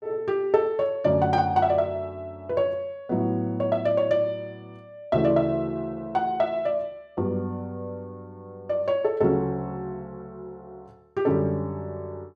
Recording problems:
none

